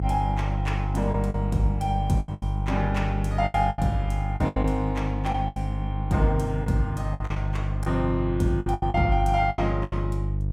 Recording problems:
mains hum; 50 Hz, harmonics up to 350 Hz, SNR 1 dB
lost packets; 11% of the sound replaced, filled with the last packet

